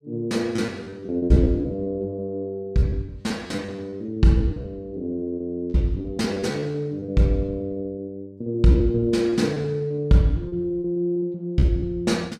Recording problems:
lost packets; 15% of the sound replaced, filled with repeated pitch periods

